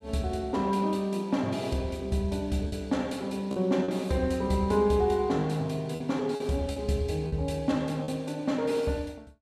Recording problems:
packet loss; 3% of the sound replaced, filled with repeated pitch periods

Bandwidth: 14.5 kHz